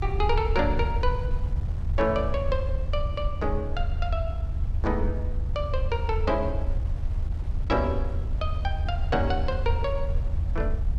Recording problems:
low-frequency rumble; below 80 Hz, SNR 0 dB
wind noise; below 1.3 kHz, SNR 20 dB

